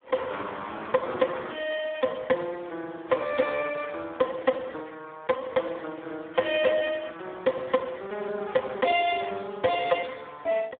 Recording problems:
telephone audio; 260 Hz to 2.9 kHz, Speex
distorted audio; hard clipping, uneven, signal-to-distortion ratio 11 dB

